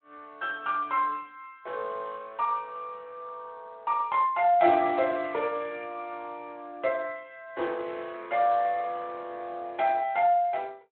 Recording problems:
phone line; 260 Hz to 3.6 kHz, Speex

